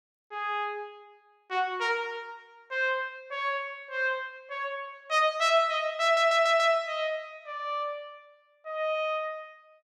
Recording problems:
audio stuttering; at 6 s

